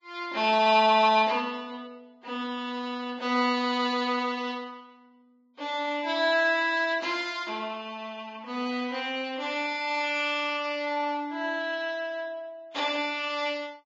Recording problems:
lossy compression; Vorbis, log-spectral distance 3 dB, nothing above 7.3 kHz

